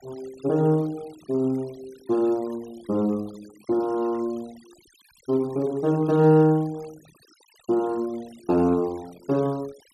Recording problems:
noise reduction artefacts; signal-to-artefact ratio 26 dB

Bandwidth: 13.5 kHz